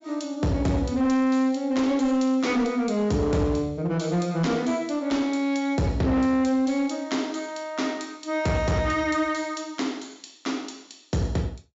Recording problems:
low-pass filter; nothing above 7.5 kHz
distorted audio; hard clipping, signal-to-distortion ratio 11 dB

